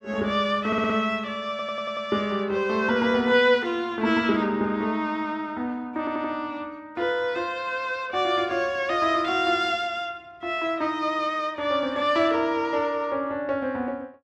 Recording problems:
audio stuttering; at 0.5 s, at 1.5 s and at 6 s

